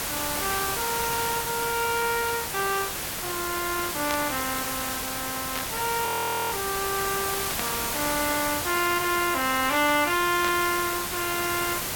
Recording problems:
hiss; slope -1 dB per octave, SNR 1 dB
burst of static; 4 times, first at 4 s; peak -1 dB vs average level
audio freezing; at 6 s

